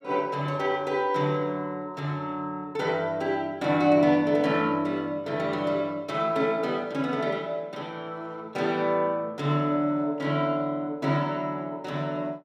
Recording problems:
none

